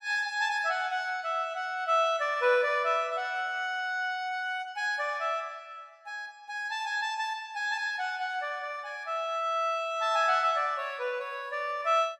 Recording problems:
none

